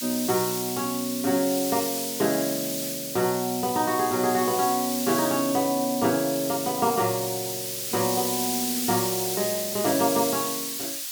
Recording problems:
hiss; slope +7 dB per octave, SNR 3 dB

